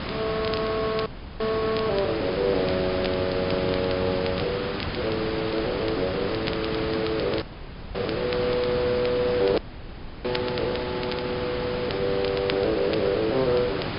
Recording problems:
treble cut off; nothing above 5.1 kHz
hiss; SNR 4 dB
crackling; vinyl, SNR 14 dB
dropout; at 1 s, at 7.5 s for 0.5 s and at 9.5 s for 0.5 s

